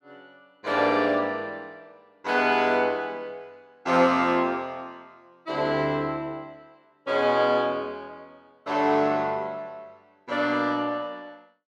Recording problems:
none

